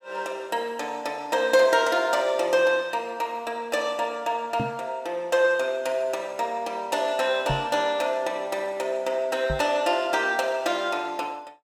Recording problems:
knock on the microphone; at 4.5 s, at 7.5 s and at 9.5 s; peak -1 dB vs average level

